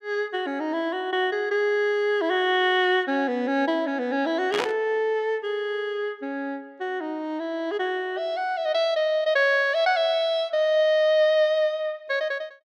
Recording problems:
burst of static; at 4.5 s; peak 0 dB vs average level

